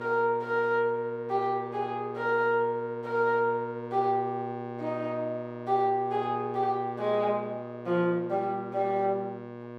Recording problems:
hum; 60 Hz, harmonics up to 2.3 kHz, SNR 11 dB

